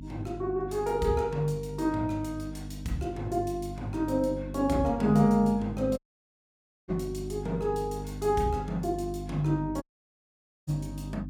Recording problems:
hum; 50 Hz, harmonics up to 300 Hz, SNR 10 dB
audio cutting out; at 6 s for 1 s and at 10 s for 1 s

